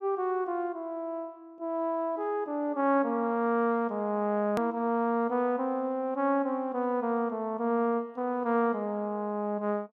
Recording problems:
hard cut with a click; at 4.5 s

